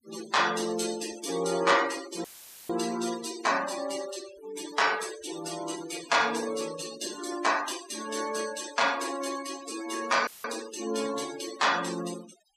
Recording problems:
noise reduction artefacts; signal-to-artefact ratio 11 dB
dropout; at 2 s and at 10 s; filled with static

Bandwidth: 14.5 kHz